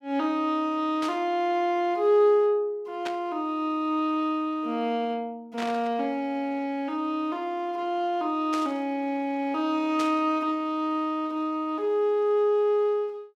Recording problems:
static burst; 5 times, first at 1 s; peak -5 dB vs average level

